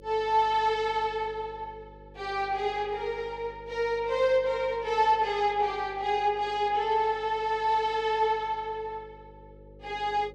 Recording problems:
electrical hum; 50 Hz, harmonics up to 550 Hz, SNR 23 dB

